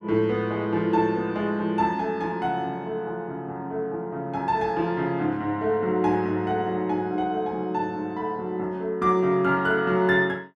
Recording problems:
none

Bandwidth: 13.5 kHz